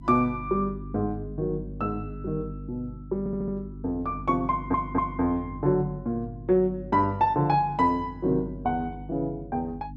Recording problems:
mains hum; 50 Hz, harmonics up to 300 Hz, SNR 13 dB
stutter; at 3 s and at 4.5 s

